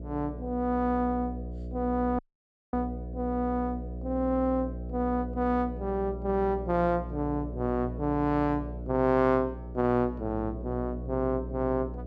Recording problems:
hum; 60 Hz, harmonics up to 660 Hz, SNR 9 dB
audio cutting out; at 2 s for 0.5 s

